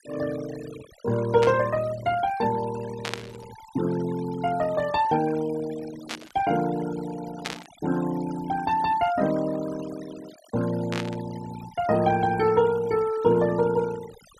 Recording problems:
noise reduction artefacts; signal-to-artefact ratio 16 dB
static burst; 5 times, first at 1.5 s; peak -1 dB vs average level

